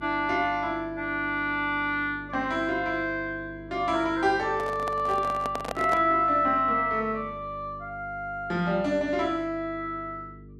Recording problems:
hum; 50 Hz, harmonics up to 450 Hz, SNR 19 dB
microphone handling noise; from 4.5 to 6 s; peak -2 dB vs average level

